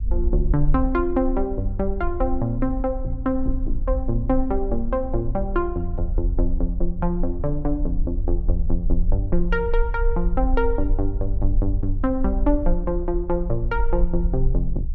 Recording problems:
rumble; below 46 Hz, strongest tone 20 Hz, SNR 2 dB

